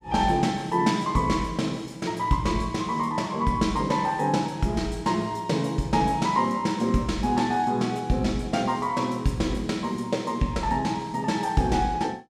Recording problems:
none

